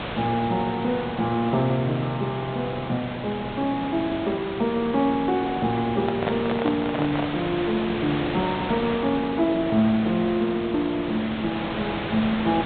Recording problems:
low-pass filter; nothing above 4 kHz
background hiss; SNR 7 dB
handling noise; from 6 to 7.5 s; peak +1 dB vs average level

